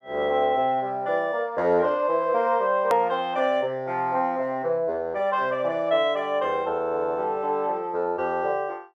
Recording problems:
hard cut with a click; at 3 s

